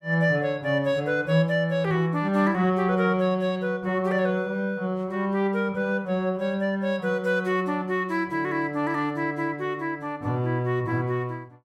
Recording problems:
none

